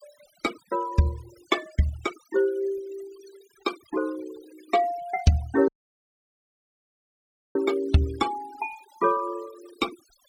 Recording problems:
noise reduction artefacts; signal-to-artefact ratio 17 dB
dropout; at 5.5 s for 2 s

